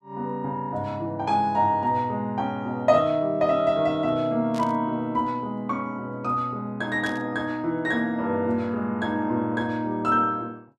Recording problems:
burst of static; at 4.5 s and at 7 s; peak -11 dB vs average level

